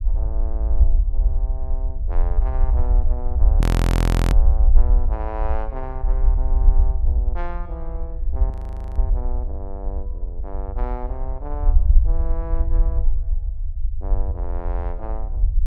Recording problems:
rumble; below 56 Hz, SNR -13 dB
audio freezing; at 3.5 s for 0.5 s and at 8.5 s

